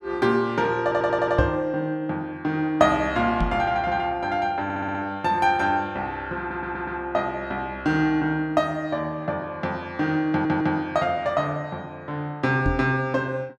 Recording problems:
audio stuttering; 4 times, first at 1 s
knock on the microphone; at 1.5 s, at 3.5 s and at 13 s; peak +4 dB vs average level

